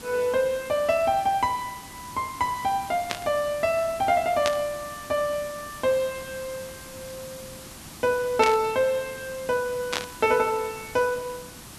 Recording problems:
hiss; SNR 15 dB
burst of static; 4 times, first at 3 s; peak +3 dB vs average level

